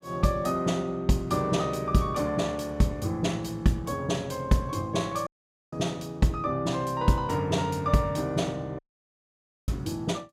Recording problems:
dropout; at 5.5 s and at 9 s for 1 s

